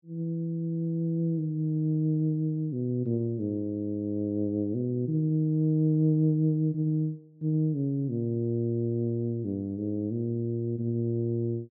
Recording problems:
none

